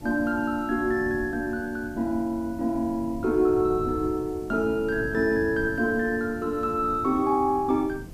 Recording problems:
background hiss; slope -3 dB per octave, SNR 28 dB
wind noise; below 240 Hz, SNR 15 dB

